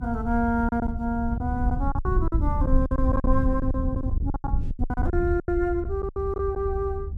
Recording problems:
rumble; below 78 Hz, SNR 1 dB
packet loss; 14% of the sound replaced, filled with silence

